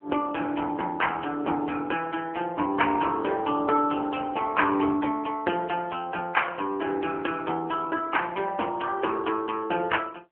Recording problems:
phone line; 260 Hz to 3.1 kHz, AMR-NB

